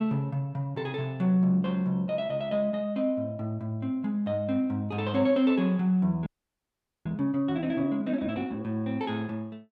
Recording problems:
audio freezing; at 6.5 s for 1 s

